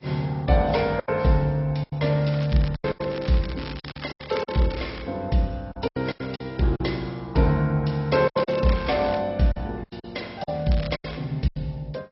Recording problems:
codec artefacts; MP2, then AAC, log-spectral distance 5 dB, nothing above 5.5 kHz
packet loss; 11% of the sound replaced, filled with silence
crackling; from 2 to 5 s, at 8 s and at 11 s; loose cable, SNR 17 dB

